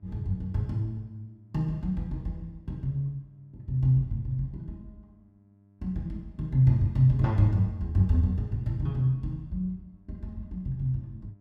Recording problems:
hum; 50 Hz, harmonics up to 700 Hz, SNR 31 dB

